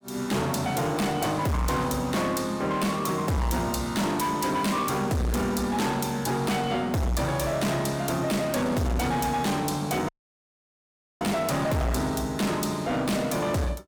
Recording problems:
distortion; hard clipping, signal-to-distortion ratio 6 dB
audio cutting out; at 10 s for 1 s

